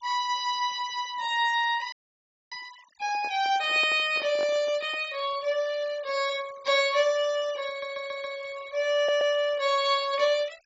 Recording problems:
low-pass filter; nothing above 8 kHz
noise reduction artefacts; signal-to-artefact ratio 21 dB
dropout; at 2 s for 0.5 s
handling noise; from 3 to 5 s; peak -10 dB vs average level
audio stuttering; at 7.5 s and at 9 s

